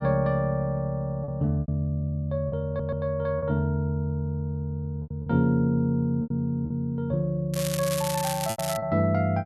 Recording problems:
lost packets; 6% of the sound replaced, filled with repeated pitch periods
audio stuttering; at 2.5 s
crackling; from 7.5 to 9 s; loose cable, SNR 7 dB

